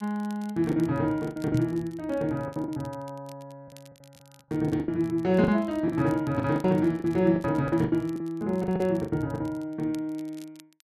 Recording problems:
crackling; vinyl, SNR 27 dB
lost packets; 11% of the sound replaced, filled with the last packet
microphone bump; at 1.5 s; peak +3 dB vs average level

